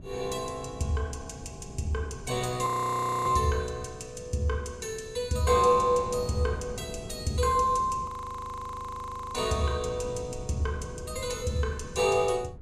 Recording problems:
wind noise; below 200 Hz, SNR 15 dB
frozen audio; at 2.5 s for 0.5 s and at 8 s for 1.5 s

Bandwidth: 14.5 kHz